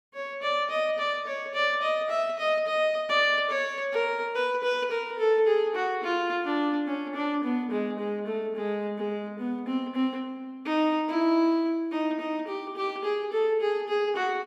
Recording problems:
none

